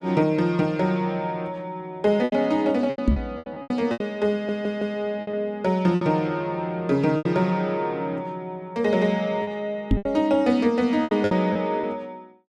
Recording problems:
packet loss; 8% of the sound replaced, filled with repeated pitch periods
microphone bump; at 3 s and at 10 s; peak +6 dB vs average level
audio stuttering; at 4.5 s

